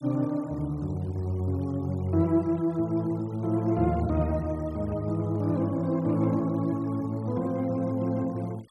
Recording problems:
denoising artefacts; signal-to-artefact ratio 27 dB

